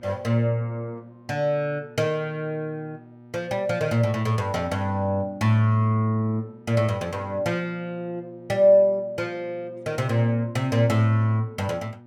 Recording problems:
hum; 60 Hz, harmonics up to 1.2 kHz, SNR 24 dB

